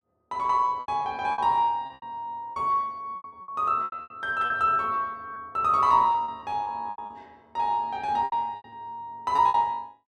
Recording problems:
lost packets; 14% of the sound replaced, filled with repeated pitch periods

